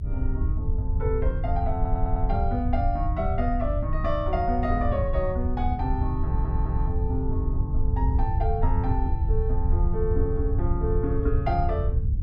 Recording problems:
low-frequency rumble; below 84 Hz, SNR -3 dB
audio stuttering; at 2 s and at 6 s

